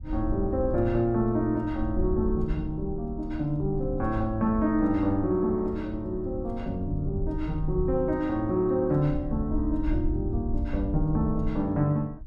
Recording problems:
rumble; below 72 Hz, SNR 8 dB

